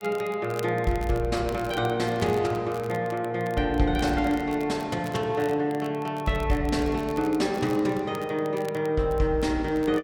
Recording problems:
crackling; vinyl, SNR 22 dB

